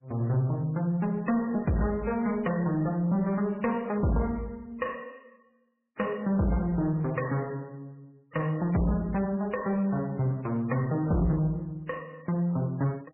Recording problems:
lossy codec; MP3, log-spectral distance 2 dB, nothing above 2.9 kHz
distorted audio; soft clipping, signal-to-distortion ratio 11 dB

